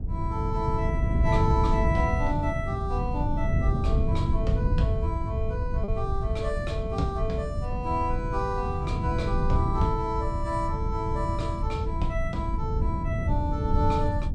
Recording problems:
rumble; below 80 Hz, SNR 5 dB
wind on the microphone; below 140 Hz, SNR -1 dB
packet loss; 0.3% of the sound replaced, filled with repeated pitch periods

